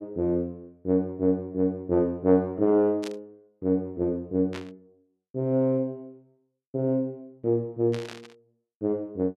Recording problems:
static burst; at 3 s, at 4.5 s and at 8 s; peak -8 dB vs average level

